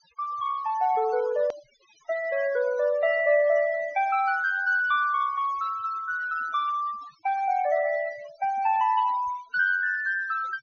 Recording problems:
low-pass filter; nothing above 6.6 kHz
noise reduction artefacts; signal-to-artefact ratio 19 dB
edit click; at 1.5 s

